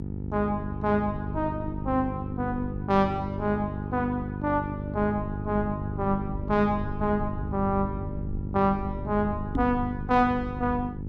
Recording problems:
electrical hum; 50 Hz, harmonics up to 550 Hz, SNR 7 dB
low-frequency rumble; below 100 Hz, SNR 11 dB
microphone thump; at 9.5 s; peak +4 dB vs average level

